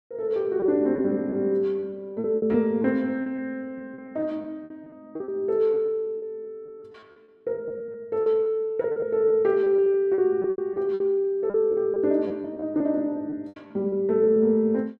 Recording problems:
packet loss; 13% of the sound replaced, filled with repeated pitch periods

